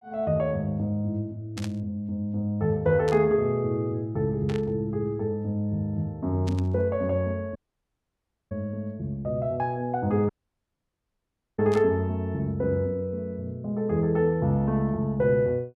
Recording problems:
burst of static; 5 times, first at 1.5 s; peak -8 dB vs average level
audio cutting out; at 7.5 s for 1 s and at 10 s for 1.5 s

